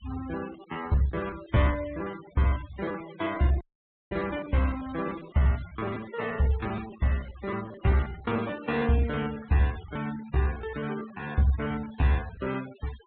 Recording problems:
treble cut off; nothing above 4 kHz
denoising artefacts; signal-to-artefact ratio 15 dB
packet loss; 15% of the sound replaced, filled with repeated pitch periods
audio cutting out; at 3.5 s for 0.5 s

